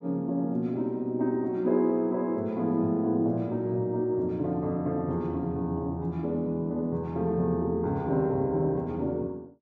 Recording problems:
none

